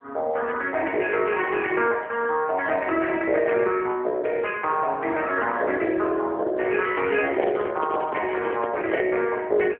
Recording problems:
phone line; 280 Hz to 3.3 kHz, AMR-NB
microphone handling noise; from 7 to 9 s; peak 0 dB vs average level

